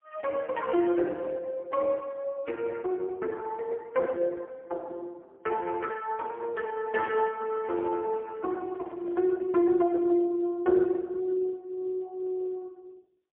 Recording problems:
telephone audio; 260 Hz to 2.6 kHz, AMR-NB, then MP3
microphone handling noise; from 7 to 9.5 s; peak -10 dB vs average level

